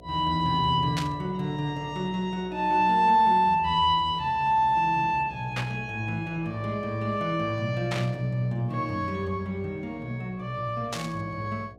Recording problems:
hum; 60 Hz, harmonics up to 720 Hz, SNR 23 dB
burst of static; 4 times, first at 1 s; peak -2 dB vs average level

